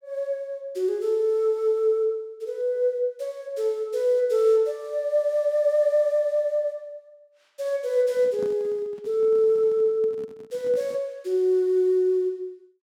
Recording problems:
microphone handling noise; from 8 to 11 s; peak -10 dB vs average level

